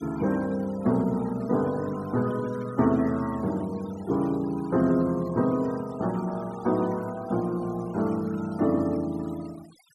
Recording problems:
noise reduction artefacts; signal-to-artefact ratio 21 dB

